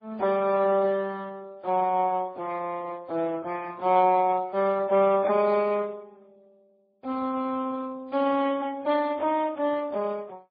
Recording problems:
lossy codec; Speex, then MP3, log-spectral distance 2 dB

